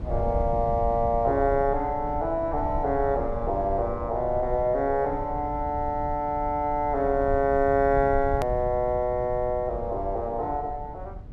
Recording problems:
low-frequency rumble; below 100 Hz, SNR 11 dB
click at an edit; at 8.5 s

